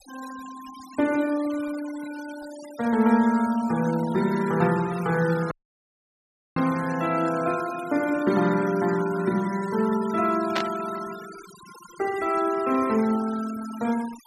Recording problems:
noise reduction artefacts; signal-to-artefact ratio 17 dB
audio cutting out; at 5.5 s for 1 s
static burst; at 11 s; peak +1 dB vs average level

